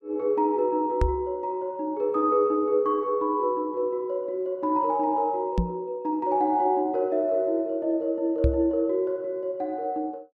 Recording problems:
knock on the microphone; at 1 s, at 5.5 s and at 8.5 s; peak +5 dB vs average level

